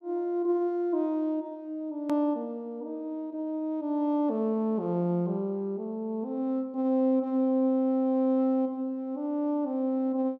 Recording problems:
click at an edit; at 2 s

